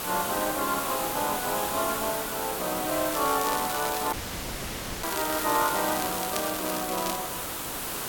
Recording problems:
hiss; slope -3 dB per octave, SNR 1 dB
crackle; from 3 to 7 s; loose cable, SNR 8 dB
dropout; at 4 s for 1 s

